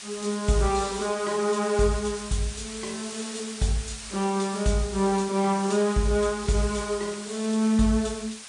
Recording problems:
lossy compression; MP3, log-spectral distance 11 dB
hiss; slope +3 dB per octave, SNR 11 dB

